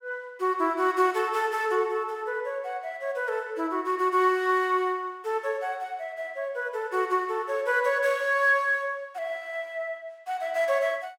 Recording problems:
none

